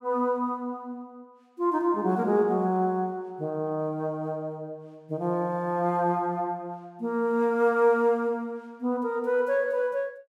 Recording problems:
none

